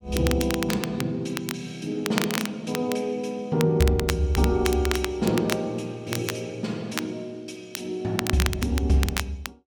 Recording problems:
crackling; vinyl, SNR 7 dB

